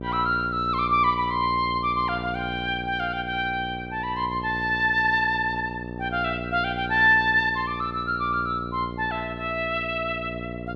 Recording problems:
hum; 60 Hz, harmonics up to 780 Hz, SNR 11 dB

